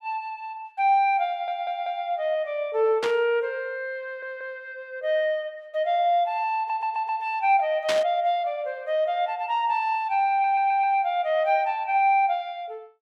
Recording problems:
audio stuttering; 4 times, first at 1.5 s
static burst; at 3 s and at 8 s; peak +1 dB vs average level

